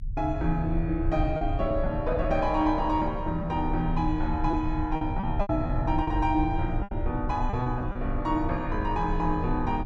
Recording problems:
rumble; below 76 Hz, strongest tone 28 Hz, SNR 6 dB
lost packets; 6% of the sound replaced, filled with repeated pitch periods

